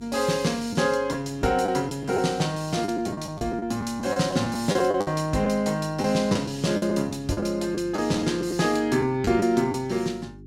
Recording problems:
hum; 50 Hz, harmonics up to 400 Hz, SNR 22 dB
lost packets; 8% of the sound replaced, filled with the last packet

